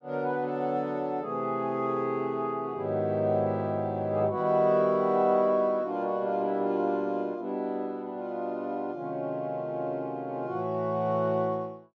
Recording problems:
none

